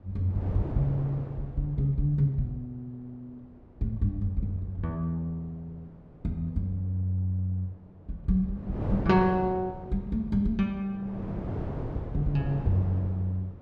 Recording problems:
wind noise; below 380 Hz, SNR 8 dB

